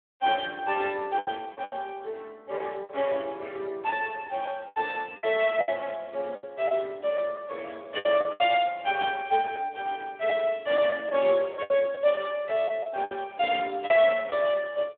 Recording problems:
telephone audio; 340 Hz to 3.5 kHz, Speex
lost packets; 8% of the sound replaced, filled with the last packet

